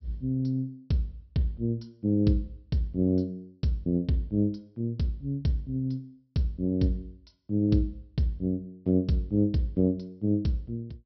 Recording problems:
low-pass filter; nothing above 5.5 kHz

